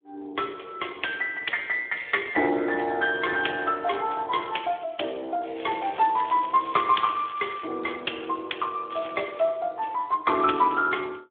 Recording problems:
phone line; 260 Hz to 3.4 kHz, Speex
crackle; from 5.5 to 7.5 s and at 9 s; loose cable, SNR 17 dB

